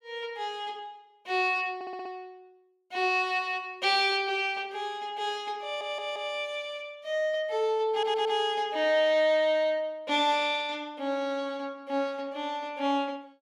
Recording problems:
stutter; at 2 s, at 5.5 s and at 8 s

